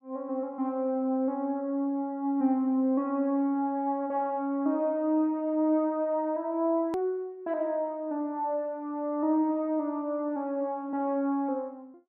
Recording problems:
hard cut with a click; at 7 s

